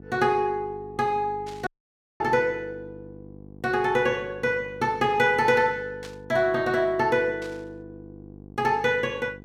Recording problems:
hum; 50 Hz, harmonics up to 850 Hz, SNR 20 dB
static burst; at 1.5 s, at 6 s and at 7.5 s; peak -13 dB vs average level
dropout; at 1.5 s for 0.5 s

